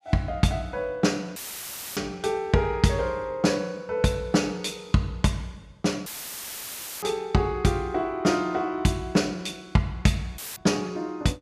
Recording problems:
dropout; at 1.5 s for 0.5 s, at 6 s for 1 s and at 10 s; filled with static

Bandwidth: 14.5 kHz